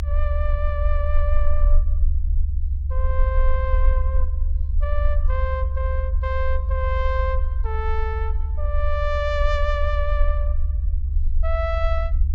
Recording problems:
low-pass filter; nothing above 8 kHz
rumble; below 70 Hz, SNR -5 dB

